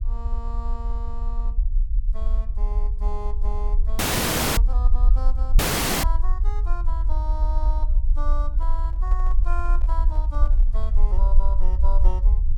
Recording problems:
low-frequency rumble; below 46 Hz, SNR -13 dB
audio cutting out; at 4 s for 0.5 s and at 5.5 s
handling noise; from 8.5 to 11 s; peak -5 dB vs average level

